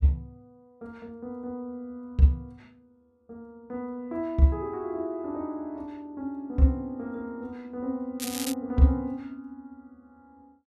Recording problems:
crackle; at 8 s; loose cable, SNR 6 dB

